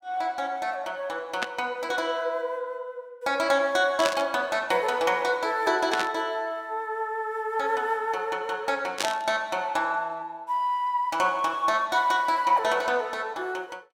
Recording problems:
burst of static; 4 times, first at 1.5 s; peak +4 dB vs average level

